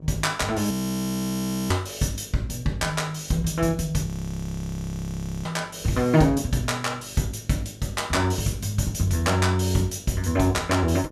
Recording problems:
electrical hum; 50 Hz, harmonics up to 1.1 kHz, SNR 25 dB
frozen audio; at 0.5 s for 1 s and at 4 s for 1.5 s

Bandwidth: 14.5 kHz